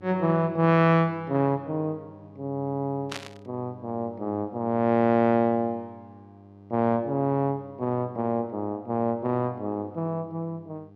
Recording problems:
electrical hum; 50 Hz, harmonics up to 1.2 kHz, SNR 23 dB
burst of static; at 3 s; peak -5 dB vs average level

